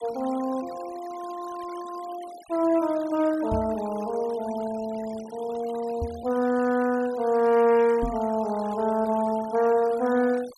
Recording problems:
noise reduction artefacts; signal-to-artefact ratio 20 dB
microphone bump; at 3.5 s, at 6 s and at 8 s; peak -1 dB vs average level

